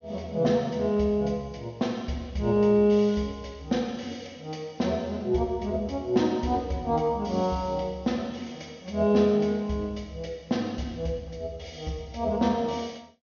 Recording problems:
low-pass filter; nothing above 6.5 kHz

